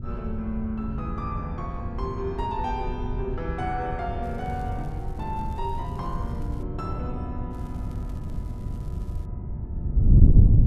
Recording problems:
distorted audio; soft clipping, signal-to-distortion ratio 11 dB
wind on the microphone; below 120 Hz, SNR -4 dB
crackling; from 4 to 6.5 s and from 7.5 to 9.5 s; loose cable, SNR 26 dB

